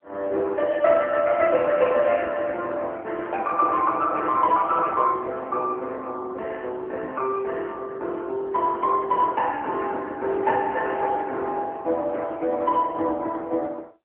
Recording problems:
phone line; 260 Hz to 2.6 kHz, AMR-NB

